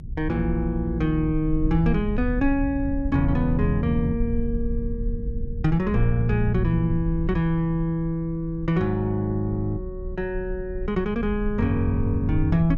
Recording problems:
rumble; below 76 Hz, SNR 7 dB

